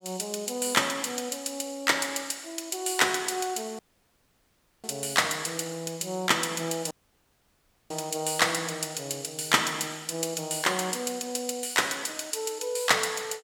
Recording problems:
dropout; at 4 s for 1 s and at 7 s for 1 s

